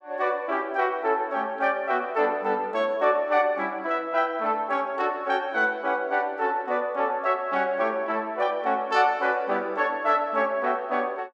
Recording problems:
none

